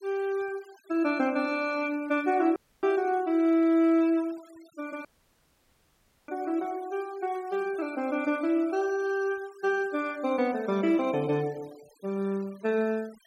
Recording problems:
noise reduction artefacts; signal-to-artefact ratio 25 dB
dropout; at 2.5 s and at 5 s for 1 s

